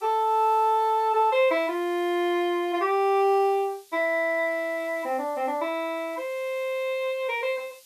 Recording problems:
hiss; SNR 27 dB

